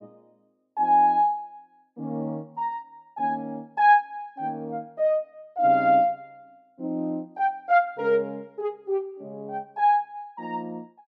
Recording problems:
none

